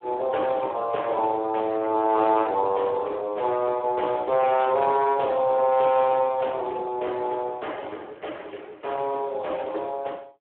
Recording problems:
phone line; 280 Hz to 3.2 kHz, Speex

